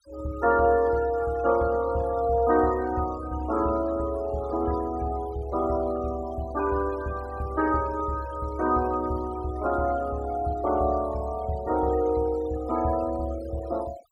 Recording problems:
denoising artefacts; signal-to-artefact ratio 19 dB

